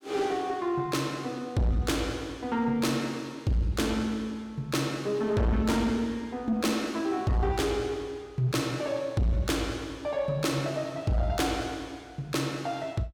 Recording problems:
distortion; soft clipping, signal-to-distortion ratio 10 dB

